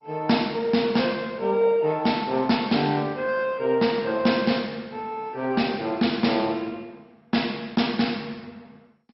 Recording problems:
lossy codec; MP2, log-spectral distance 4 dB, nothing above 5.5 kHz

